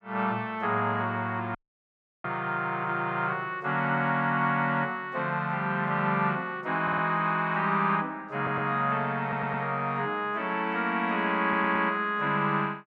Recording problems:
dropout; at 1.5 s for 0.5 s
stutter; 4 times, first at 7 s

